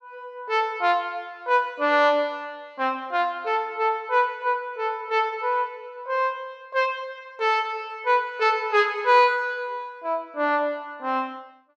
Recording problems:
none

